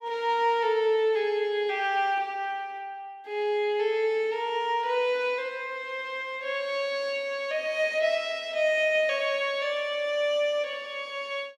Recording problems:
none

